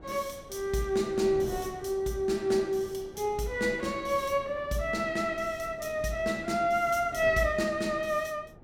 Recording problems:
wind noise; below 440 Hz, SNR 18 dB

